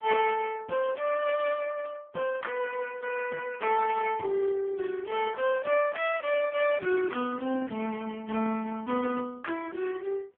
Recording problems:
phone line; 170 Hz to 3.1 kHz, AMR-NB

